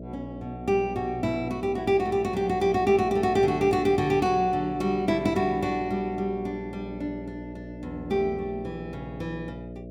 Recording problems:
hum; 60 Hz, harmonics up to 660 Hz, SNR 13 dB

